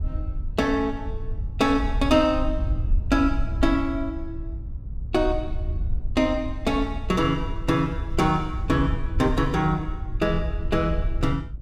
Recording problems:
wind on the microphone; below 74 Hz, SNR 6 dB

